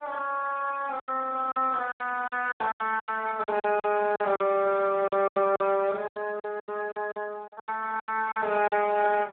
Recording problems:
phone line; 300 Hz to 2.5 kHz, Speex
packet loss; 15% of the sound replaced, filled with silence

